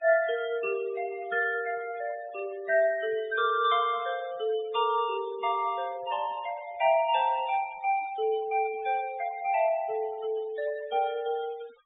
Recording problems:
treble cut off; nothing above 4 kHz
noise reduction artefacts; signal-to-artefact ratio 21 dB

